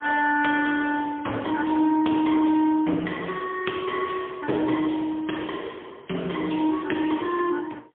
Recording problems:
telephone audio; 220 Hz to 3.4 kHz, AMR-NB, then MP3

